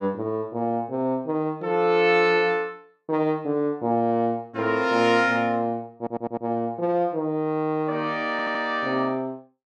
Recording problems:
stutter; at 6 s and at 8.5 s

